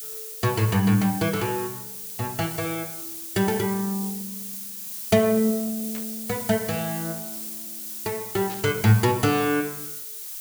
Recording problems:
background hiss; slope +4 dB per octave, SNR 8 dB
static burst; at 6 s and at 8.5 s; peak -13 dB vs average level

